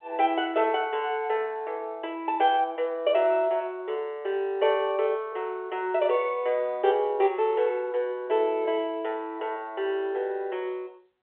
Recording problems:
phone line; 340 Hz to 3.5 kHz, G.711

